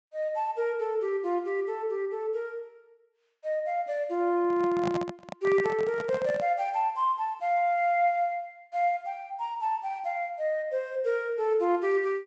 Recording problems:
low-pass filter; nothing above 8 kHz
microphone handling noise; from 4.5 to 6.5 s; peak -1 dB vs average level

